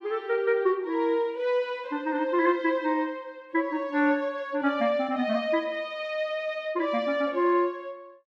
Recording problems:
none

